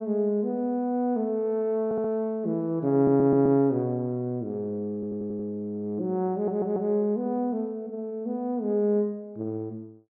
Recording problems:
stutter; 4 times, first at 2 s

